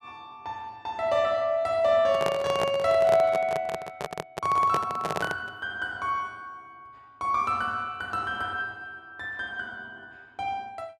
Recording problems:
handling noise; from 2 to 5.5 s; peak +2 dB vs average level

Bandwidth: 13 kHz